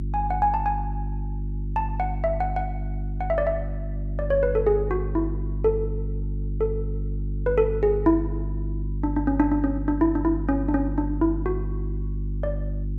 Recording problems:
hum; 50 Hz, harmonics up to 350 Hz, SNR 5 dB

